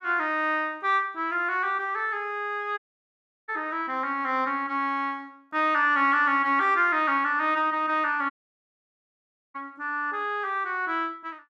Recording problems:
dropout; at 3 s for 0.5 s and at 8.5 s for 1 s

